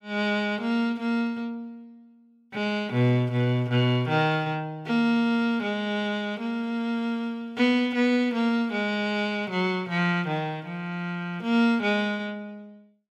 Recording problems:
none

